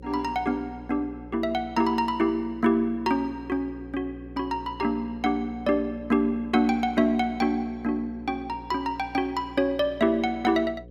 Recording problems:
hum; 60 Hz, harmonics up to 540 Hz, SNR 19 dB

